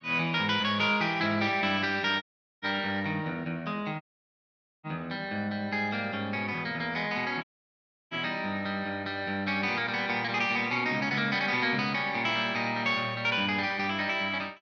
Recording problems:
audio cutting out; at 2 s, at 4 s for 1 s and at 7.5 s for 0.5 s

